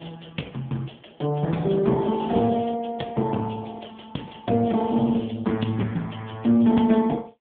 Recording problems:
phone line; 110 Hz to 3.5 kHz, AMR-NB

